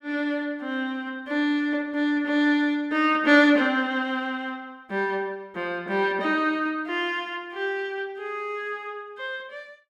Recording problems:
none

